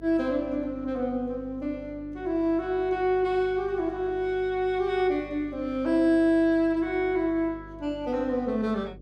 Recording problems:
hum; 50 Hz, harmonics up to 600 Hz, SNR 21 dB

